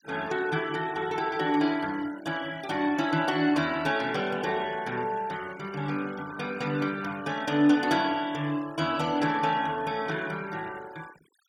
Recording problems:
denoising artefacts; signal-to-artefact ratio 20 dB

